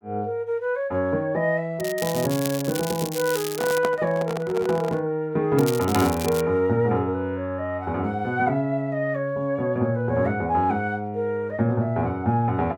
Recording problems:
crackling; from 2 to 4 s and at 5.5 s; loose cable, SNR 9 dB
handling noise; from 3.5 to 5 s; peak 0 dB vs average level

